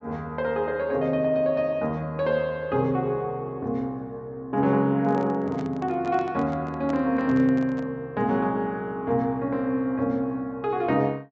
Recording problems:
treble missing; nothing above 8 kHz
microphone handling noise; from 5 to 8 s; peak -7 dB vs average level

